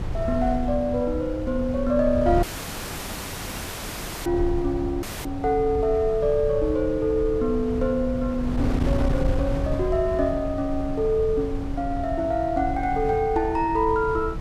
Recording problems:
wind on the microphone; below 130 Hz, SNR 7 dB
dropout; at 2.5 s for 2 s and at 5 s

